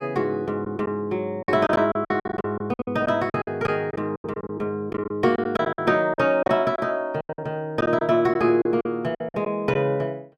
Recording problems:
packet loss; 13% of the sound replaced, filled with silence

